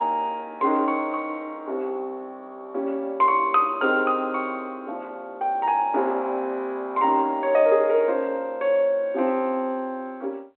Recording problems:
telephone audio; 280 Hz to 3.1 kHz, G.726

